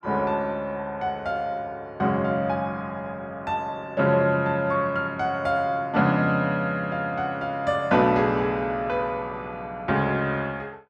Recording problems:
none

